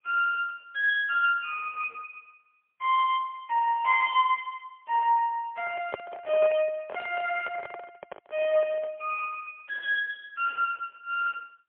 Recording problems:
phone line; 520 Hz to 2.7 kHz, AMR-NB, then MP3
microphone handling noise; from 5.5 to 9 s; peak -6 dB vs average level

